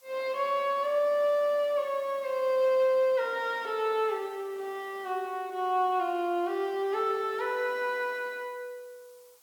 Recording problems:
background hiss; SNR 29 dB

